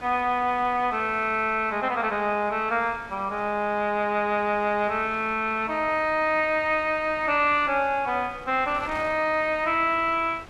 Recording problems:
wind on the microphone; below 1.8 kHz, SNR 21 dB

